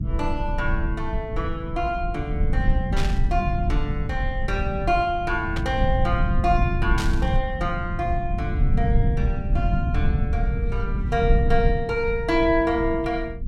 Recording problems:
low-frequency rumble; below 110 Hz, SNR 0 dB
static burst; at 3 s, at 5.5 s and at 7 s; peak -1 dB vs average level

